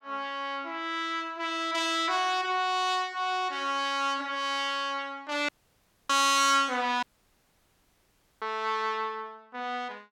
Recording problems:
audio cutting out; at 5.5 s for 0.5 s and at 7 s for 1.5 s

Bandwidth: 17 kHz